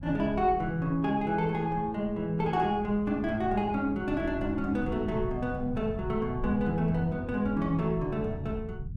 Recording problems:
rumble; below 140 Hz, SNR 12 dB

